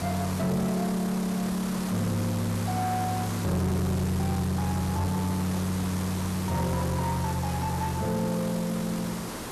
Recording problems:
distorted audio; soft clipping, signal-to-distortion ratio 12 dB
hiss; slope -5 dB per octave, SNR 6 dB

